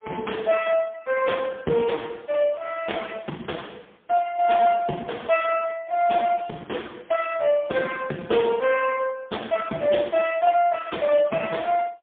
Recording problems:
phone line; 240 Hz to 2.2 kHz, AMR-NB, then MP3

